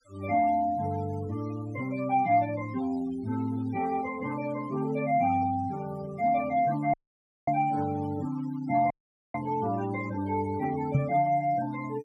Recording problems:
noise reduction artefacts; signal-to-artefact ratio 17 dB
audio cutting out; at 7 s for 0.5 s and at 9 s
microphone bump; at 11 s; peak +8 dB vs average level

